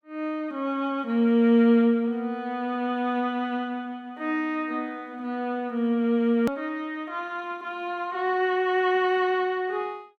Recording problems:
hard cut with a click; at 6.5 s

